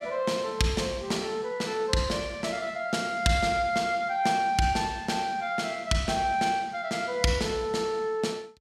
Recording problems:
none

